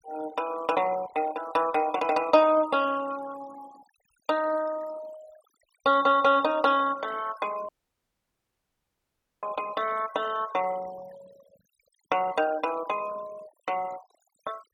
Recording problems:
noise reduction artefacts; signal-to-artefact ratio 18 dB
dropout; at 7.5 s for 1.5 s

